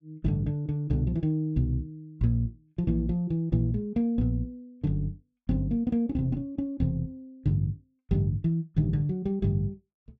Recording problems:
none

